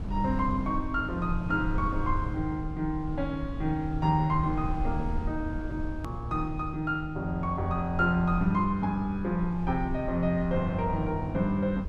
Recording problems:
rumble; below 100 Hz, SNR 8 dB
click at an edit; at 6 s

